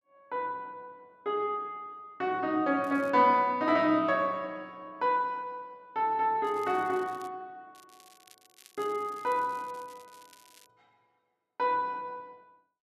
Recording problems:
crackling; at 3 s, at 6.5 s and from 7.5 to 11 s; loose cable, SNR 27 dB

